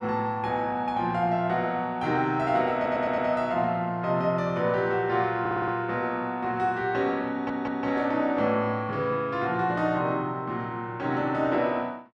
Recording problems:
audio stuttering; at 3 s, at 5.5 s and at 7.5 s

